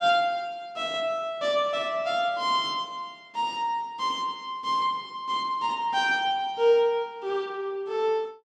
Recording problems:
none

